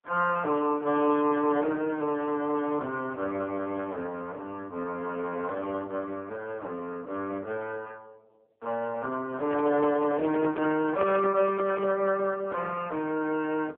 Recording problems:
phone line; 260 Hz to 3.2 kHz, AMR-NB
handling noise; from 9.5 to 12 s; peak -5 dB vs average level

